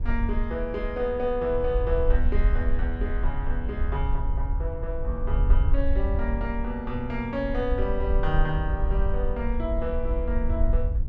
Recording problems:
wind noise; below 56 Hz, SNR -1 dB

